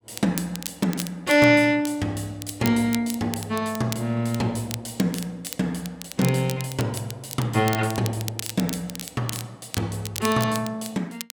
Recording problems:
crackle; vinyl, SNR 12 dB

